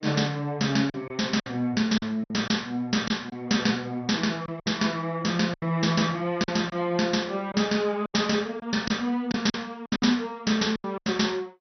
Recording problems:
lossy compression; MP2, log-spectral distance 4 dB, nothing above 6 kHz
packet loss; 9% of the sound replaced, filled with silence

